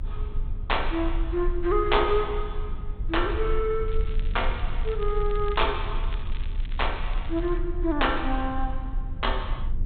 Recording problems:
low-pass filter; nothing above 4 kHz
rumble; below 46 Hz, strongest tone 28 Hz, SNR 5 dB
crackling; from 4 to 7.5 s; loose cable, SNR 19 dB

